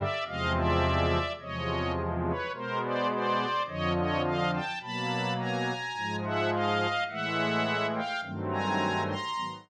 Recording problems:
none

